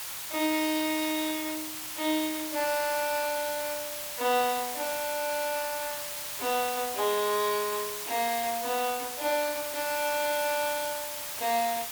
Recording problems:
background hiss; SNR 4 dB

